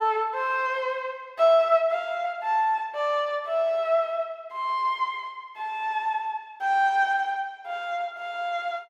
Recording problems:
none

